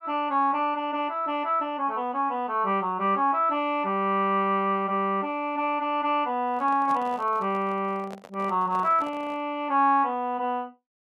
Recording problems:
handling noise; from 6.5 to 9.5 s; peak -11 dB vs average level

